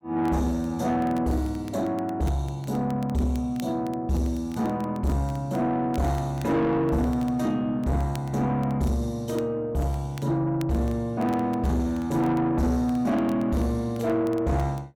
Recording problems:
distorted audio; soft clipping, signal-to-distortion ratio 11 dB
crackle; vinyl, SNR 26 dB

